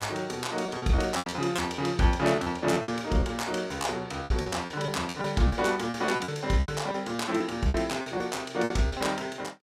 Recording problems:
packet loss; 13% of the sound replaced, filled with repeated pitch periods

